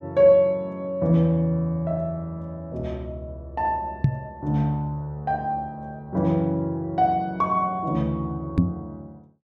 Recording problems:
microphone thump; at 4 s and at 8.5 s; peak +9 dB vs average level

